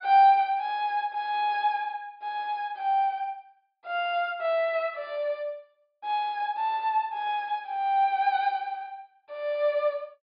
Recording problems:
low-pass filter; nothing above 5 kHz

